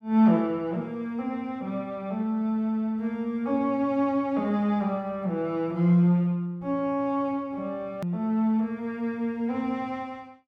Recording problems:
click at an edit; at 8 s

